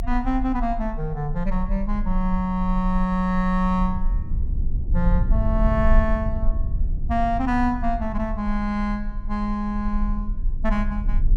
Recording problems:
rumble; below 52 Hz, strongest tone 24 Hz, SNR 3 dB

